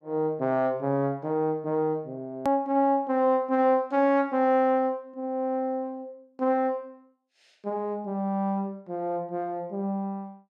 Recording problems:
hard cut with a click; at 2.5 s

